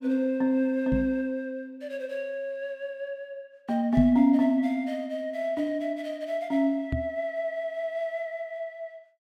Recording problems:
microphone bump; at 1 s, at 4 s and at 7 s; peak +4 dB vs average level

